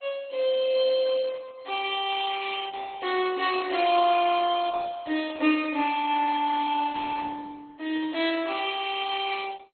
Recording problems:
lossy compression; Opus, then MP2, log-spectral distance 5 dB, nothing above 4.2 kHz

